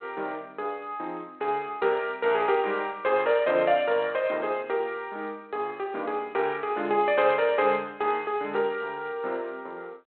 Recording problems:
telephone audio; 260 Hz to 3.6 kHz, G.726

